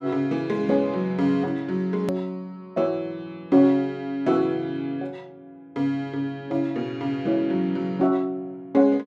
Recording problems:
click at an edit; at 2 s

